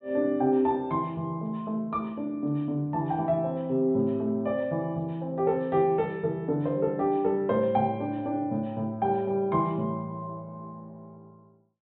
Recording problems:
treble cut off; nothing above 4 kHz

